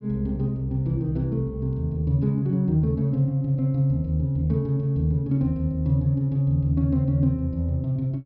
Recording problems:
treble missing; nothing above 5.5 kHz

